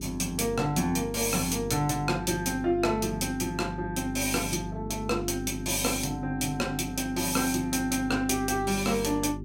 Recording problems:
hum; 50 Hz, harmonics up to 400 Hz, SNR 10 dB

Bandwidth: 16.5 kHz